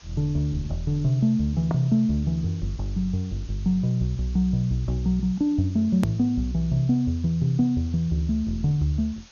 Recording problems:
lossy compression; MP2, log-spectral distance 3 dB, nothing above 13.1 kHz
background hiss; slope +1 dB per octave, SNR 26 dB
click at an edit; at 6 s

